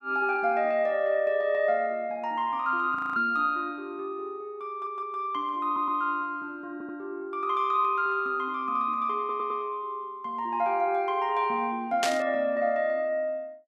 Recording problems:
frozen audio; at 3 s
audio stuttering; 4 times, first at 4.5 s
static burst; at 12 s; peak +3 dB vs average level

